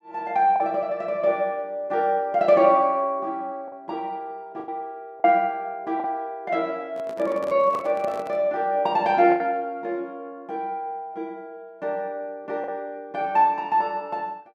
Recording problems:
packet loss; 3% of the sound replaced, filled with the last packet
microphone handling noise; from 7 to 8.5 s; peak -8 dB vs average level

